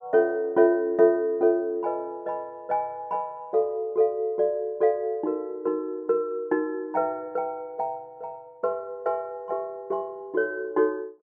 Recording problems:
none

